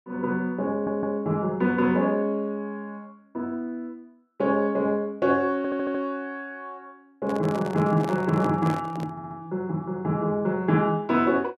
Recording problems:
stutter; at 0.5 s, at 5.5 s and at 9 s
handling noise; from 7 to 9.5 s; peak -5 dB vs average level

